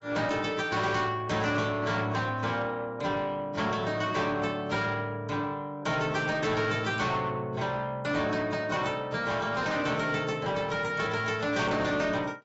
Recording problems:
codec artefacts; AAC, log-spectral distance 3 dB, nothing above 7.6 kHz
distortion; soft clipping, signal-to-distortion ratio 11 dB

